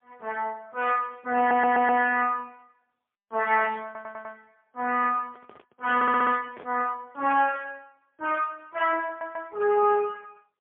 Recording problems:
phone line; 260 Hz to 3.2 kHz, AMR-NB, then MP3
audio stuttering; 4 times, first at 1.5 s
handling noise; from 5 to 6.5 s; peak -13 dB vs average level

